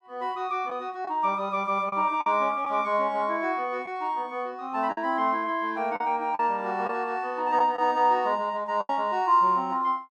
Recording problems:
packet loss; 4% of the sound replaced, filled with the last packet

